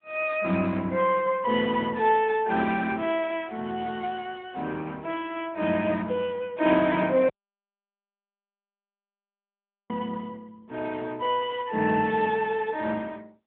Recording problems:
phone line; 130 Hz to 3.4 kHz, AMR-NB
dropout; at 7.5 s for 2.5 s

